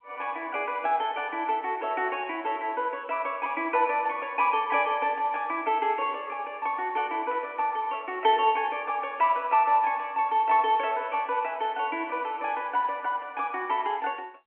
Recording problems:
phone line; 240 Hz to 3.3 kHz, G.711

